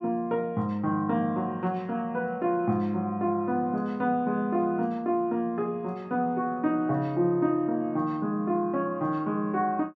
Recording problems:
none

